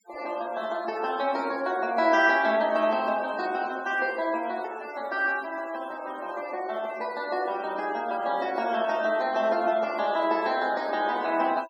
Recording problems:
noise reduction artefacts; signal-to-artefact ratio 21 dB

